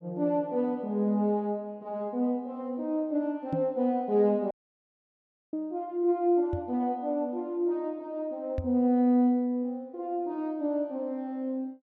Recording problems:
knock on the microphone; at 3.5 s, at 6.5 s and at 8.5 s; peak 0 dB vs average level
audio cutting out; at 4.5 s for 1 s

